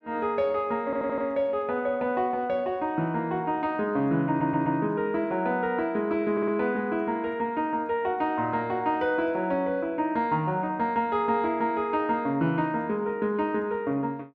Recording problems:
stutter; at 1 s, at 4.5 s and at 6.5 s

